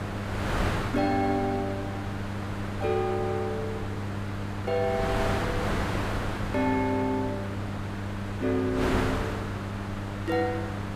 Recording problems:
hum; 50 Hz, harmonics up to 1 kHz, SNR 5 dB
wind noise; below 1.4 kHz, SNR 4 dB

